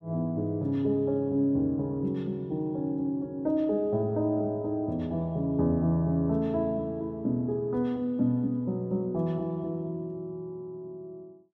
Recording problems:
none

